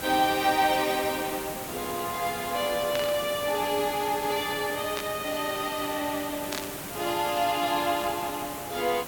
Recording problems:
hiss; slope -4 dB per octave, SNR 8 dB
static burst; at 3 s, at 5 s and at 6.5 s; peak -1 dB vs average level

